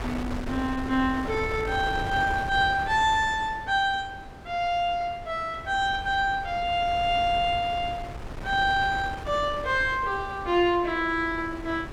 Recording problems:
wind on the microphone; below 690 Hz, SNR 12 dB

